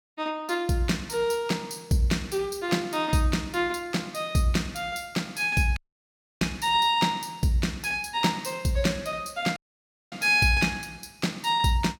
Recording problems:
audio cutting out; at 6 s for 0.5 s and at 9.5 s for 0.5 s

